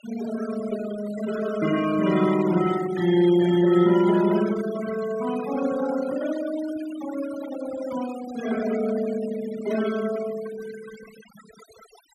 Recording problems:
noise reduction artefacts; signal-to-artefact ratio 14 dB

